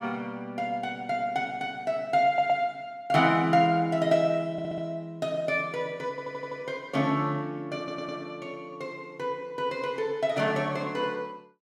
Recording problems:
stutter; 4 times, first at 2.5 s

